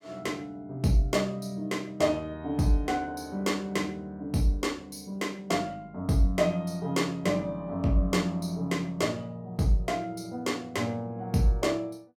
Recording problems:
none

